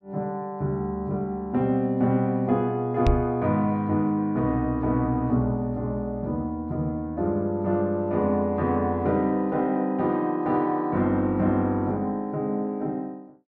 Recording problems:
microphone bump; at 3 s; peak +4 dB vs average level

